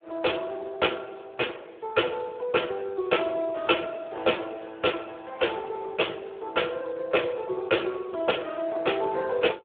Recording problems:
phone line; 300 Hz to 3.6 kHz, Speex

